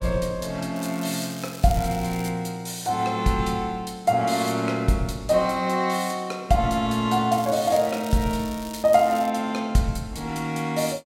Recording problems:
crackle; from 1 to 2.5 s and from 7.5 to 9.5 s; loose cable, SNR 16 dB

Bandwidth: 16 kHz